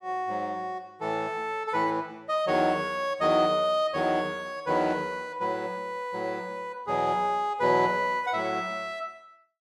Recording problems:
none

